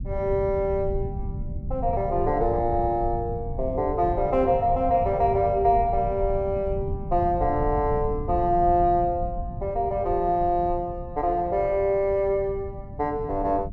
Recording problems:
low-frequency rumble; below 120 Hz, SNR 10 dB

